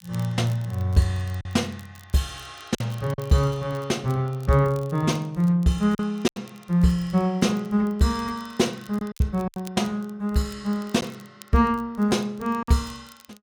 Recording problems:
crackle; vinyl, SNR 27 dB
lost packets; 4% of the sound replaced, filled with silence

